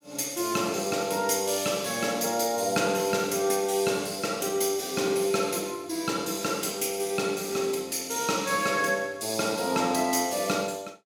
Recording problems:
none

